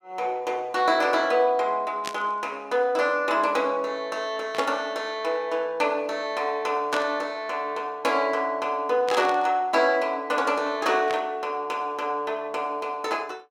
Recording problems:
static burst; 5 times, first at 2 s; peak -2 dB vs average level

